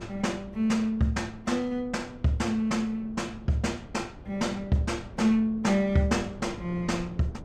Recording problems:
wind noise; below 300 Hz, SNR 18 dB

